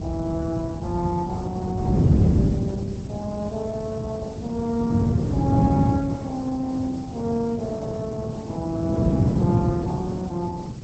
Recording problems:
codec artefacts; Opus, log-spectral distance 3 dB
hiss; slope -2 dB per octave, SNR 21 dB
wind on the microphone; below 220 Hz, SNR -3 dB

